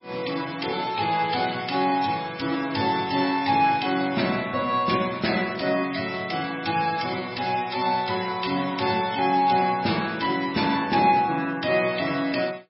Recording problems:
lossy codec; MP3, log-spectral distance 7 dB, nothing above 5.3 kHz

